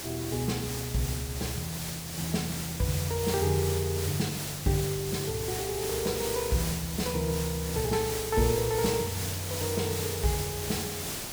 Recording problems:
hiss; slope -2 dB per octave, SNR 3 dB

